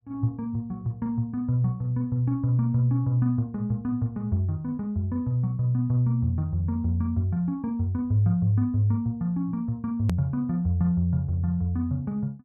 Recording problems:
hard cut with a click; at 10 s

